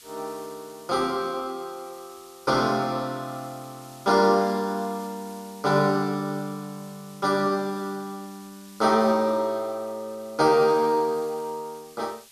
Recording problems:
hiss; slope +3 dB per octave, SNR 23 dB

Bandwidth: 14 kHz